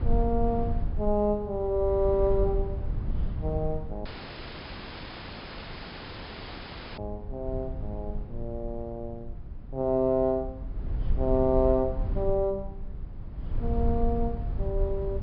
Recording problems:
low-pass filter; nothing above 5.5 kHz
rumble; below 78 Hz, SNR 5 dB
audio cutting out; at 4 s for 3 s

